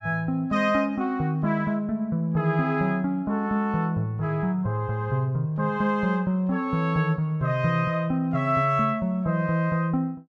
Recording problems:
none

